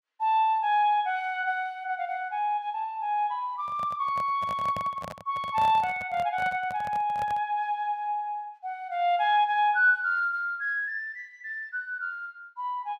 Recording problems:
microphone handling noise; from 3.5 to 7.5 s; peak -6 dB vs average level

